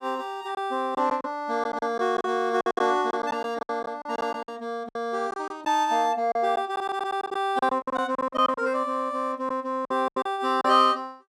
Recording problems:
lost packets; 12% of the sound replaced, filled with silence
audio stuttering; at 6.5 s

